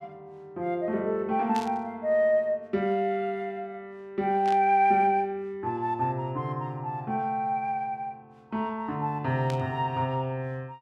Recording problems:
static burst; at 1.5 s, at 4.5 s and at 9.5 s; peak -7 dB vs average level

